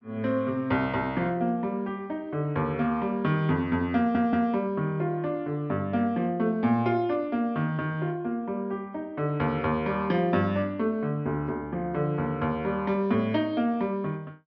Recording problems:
treble missing; nothing above 5.9 kHz
stutter; at 4 s

